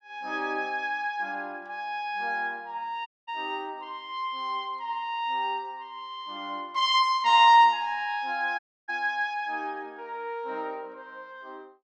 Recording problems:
dropout; at 3 s and at 8.5 s

